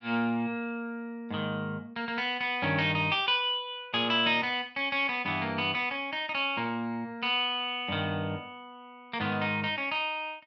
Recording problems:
treble cut off; nothing above 6.8 kHz

